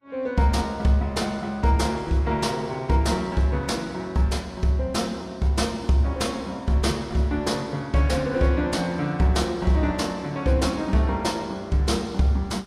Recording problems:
codec artefacts; Vorbis, log-spectral distance 2 dB, nothing above 11.3 kHz

